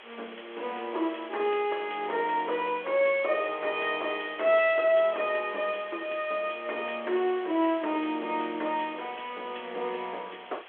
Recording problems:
phone line; 300 Hz to 3.4 kHz, G.726
hiss; SNR 18 dB

